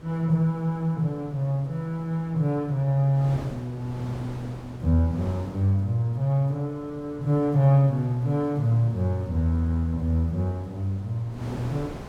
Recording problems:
wind noise; below 650 Hz, SNR 18 dB

